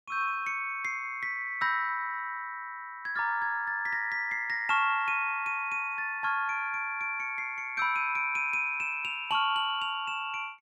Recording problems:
none

